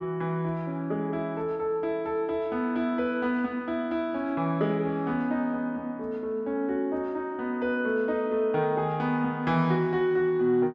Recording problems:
none

